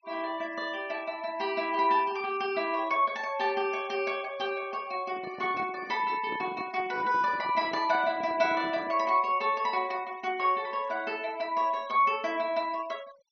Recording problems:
low-pass filter; nothing above 6.1 kHz
denoising artefacts; signal-to-artefact ratio 24 dB
handling noise; from 5 to 9 s; peak -8 dB vs average level

